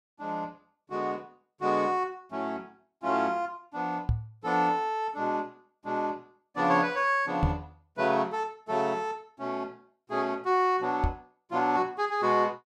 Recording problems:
microphone thump; at 4 s, at 7.5 s and at 11 s; peak +7 dB vs average level

